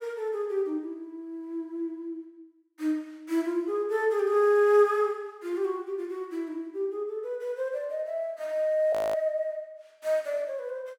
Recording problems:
frozen audio; at 9 s

